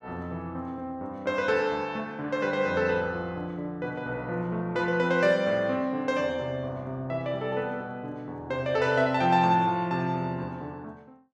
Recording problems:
none

